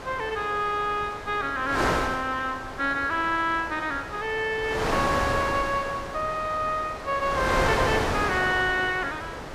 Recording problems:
wind on the microphone; below 1.6 kHz, SNR 4 dB

